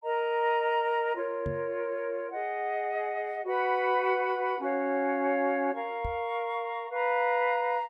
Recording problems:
microphone bump; at 1.5 s and at 6 s; peak -3 dB vs average level

